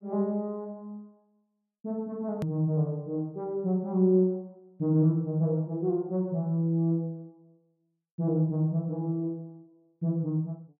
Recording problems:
hard cut with a click; at 2.5 s

